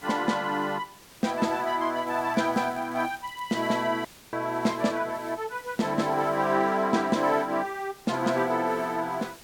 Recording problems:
hiss; slope -2 dB per octave, SNR 22 dB
crackling; from 2 to 3.5 s; loose cable, SNR 29 dB
dropout; at 4 s

